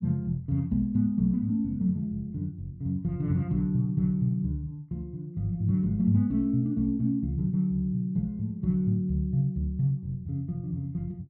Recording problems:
none

